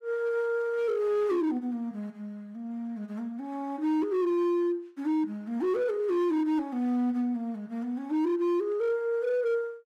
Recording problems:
distorted audio; hard clipping, signal-to-distortion ratio 11 dB

